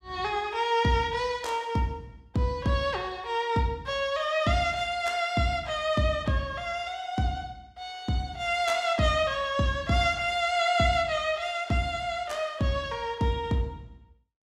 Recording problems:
none

